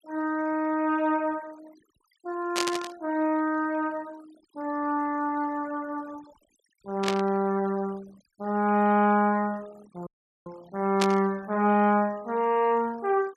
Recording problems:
denoising artefacts; signal-to-artefact ratio 24 dB
static burst; at 2.5 s, at 7 s and at 11 s; peak +2 dB vs average level
audio cutting out; at 10 s

